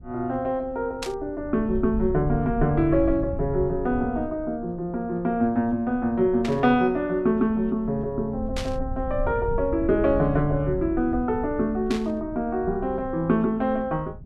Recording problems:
low-frequency rumble; below 100 Hz, SNR 12 dB
static burst; 4 times, first at 1 s; peak -3 dB vs average level

